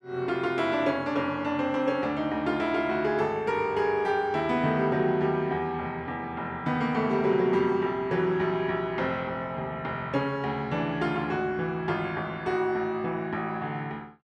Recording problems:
none

